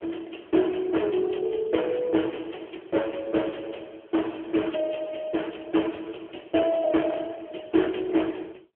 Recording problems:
telephone audio; 240 Hz to 3.3 kHz, AMR-NB

